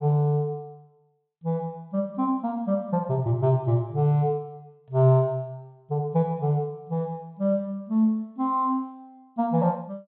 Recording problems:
treble cut off; nothing above 4 kHz

